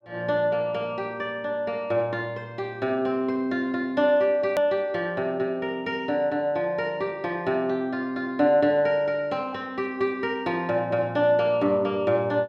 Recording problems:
hard cut with a click; at 4.5 s

